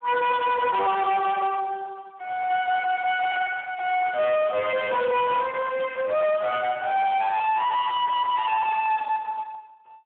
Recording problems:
phone line; 900 Hz to 3.4 kHz, Speex
distortion; hard clipping, uneven, signal-to-distortion ratio 5 dB

